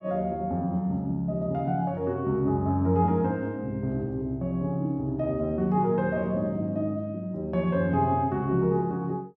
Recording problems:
none

